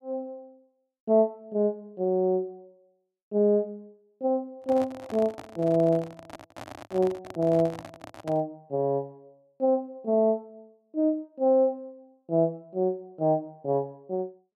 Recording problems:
handling noise; from 4.5 to 8.5 s; peak -9 dB vs average level

